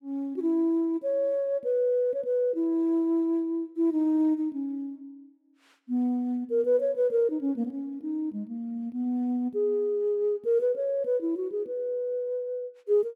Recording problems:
none

